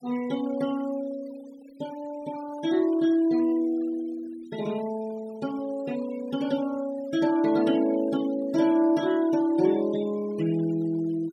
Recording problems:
denoising artefacts; signal-to-artefact ratio 22 dB

